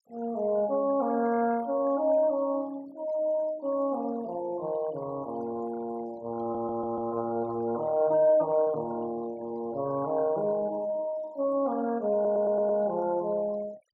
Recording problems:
noise reduction artefacts; signal-to-artefact ratio 21 dB
audio stuttering; at 6.5 s and at 12 s

